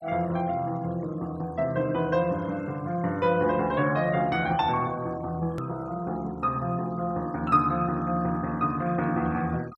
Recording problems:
noise reduction artefacts; signal-to-artefact ratio 24 dB
hard cut with a click; at 5.5 s

